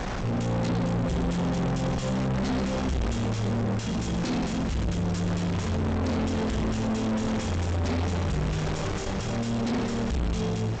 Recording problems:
lossy codec; G.722, log-spectral distance 4 dB, nothing above 7.8 kHz
distortion; soft clipping, signal-to-distortion ratio 5 dB
wind on the microphone; below 1.2 kHz, SNR 6 dB

